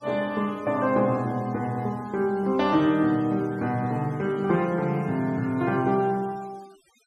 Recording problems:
noise reduction artefacts; signal-to-artefact ratio 27 dB

